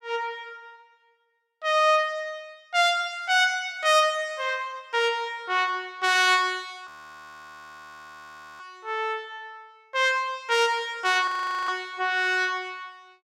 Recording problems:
frozen audio; at 7 s for 1.5 s and at 11 s

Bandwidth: 16.5 kHz